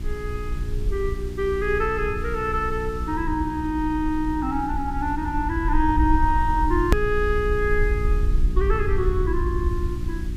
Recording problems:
electrical hum; 60 Hz, harmonics up to 360 Hz, SNR 10 dB
hiss; slope -2 dB per octave, SNR 24 dB
rumble; below 64 Hz, SNR 3 dB
edit click; at 7 s

